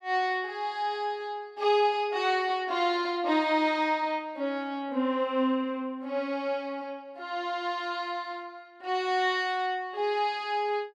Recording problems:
none

